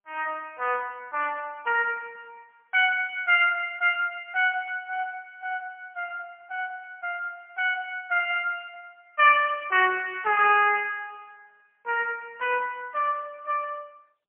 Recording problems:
phone line; 320 Hz to 3.3 kHz, AMR-NB, then MP3

